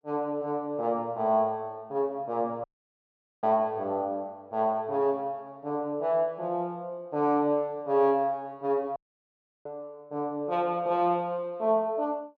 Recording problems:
audio cutting out; at 2.5 s for 1 s and at 9 s for 0.5 s

